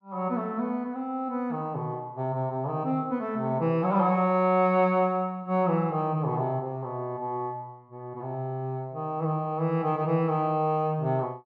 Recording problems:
none

